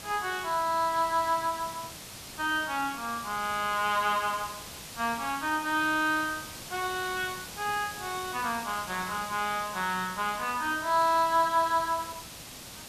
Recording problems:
background hiss; slope -1 dB per octave, SNR 12 dB

